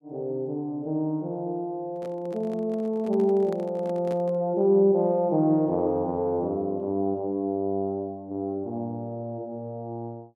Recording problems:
handling noise; from 2 to 4.5 s; peak -9 dB vs average level

